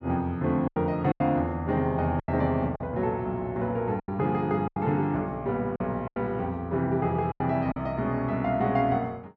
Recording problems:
packet loss; 7% of the sound replaced, filled with silence

